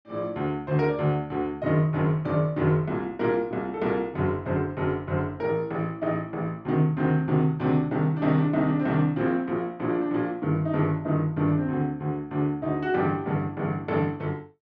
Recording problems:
none

